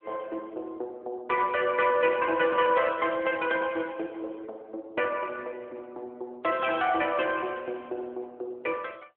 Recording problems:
phone line; 260 Hz to 3.4 kHz, AMR-NB

